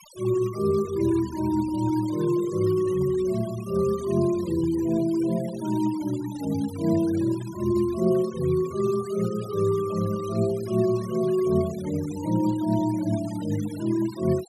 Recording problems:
denoising artefacts; signal-to-artefact ratio 19 dB

